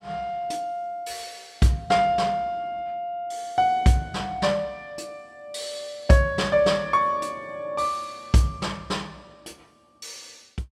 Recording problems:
none

